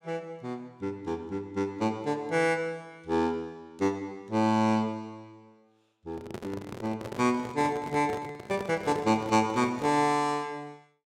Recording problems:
handling noise; from 6 to 10 s; peak -5 dB vs average level

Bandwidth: 16 kHz